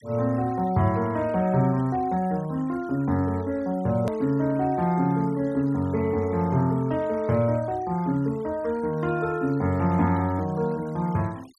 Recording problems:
denoising artefacts; signal-to-artefact ratio 25 dB
click at an edit; at 4 s

